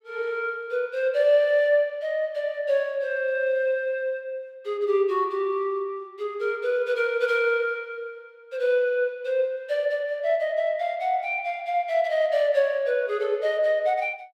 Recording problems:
none

